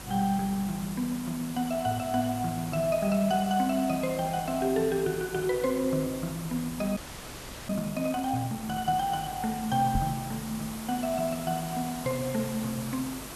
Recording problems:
hum; 50 Hz, harmonics up to 350 Hz, SNR 21 dB
background hiss; slope -3 dB per octave, SNR 11 dB
audio freezing; at 7 s for 0.5 s
microphone bump; at 10 s; peak +3 dB vs average level

